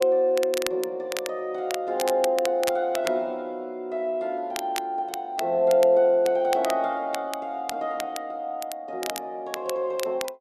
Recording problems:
crackling; vinyl, SNR 12 dB

